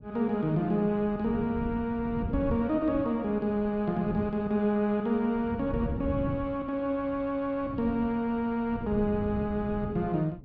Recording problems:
wind on the microphone; below 200 Hz, SNR 10 dB

